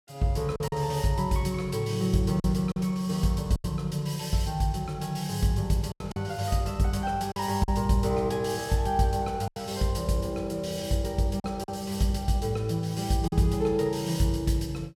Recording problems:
packet loss; 4% of the sound replaced, filled with silence

